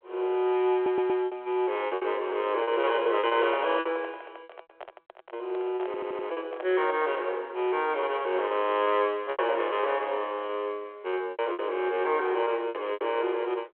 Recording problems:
phone line; 320 Hz to 3.3 kHz, G.726
packet loss; 9% of the sound replaced, filled with repeated pitch periods
audio stuttering; at 0.5 s and at 6 s
handling noise; from 3 to 7 s; peak -4 dB vs average level

